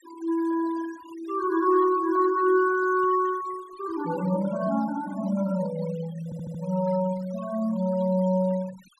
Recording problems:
denoising artefacts; signal-to-artefact ratio 20 dB
audio stuttering; at 6 s

